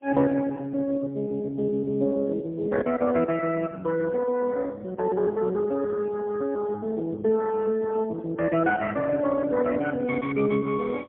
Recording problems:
telephone audio; 220 Hz to 3.3 kHz, AMR-NB, then MP3

